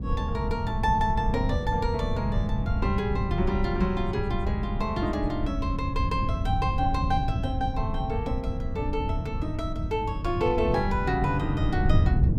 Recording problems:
wind noise; below 120 Hz, SNR 1 dB

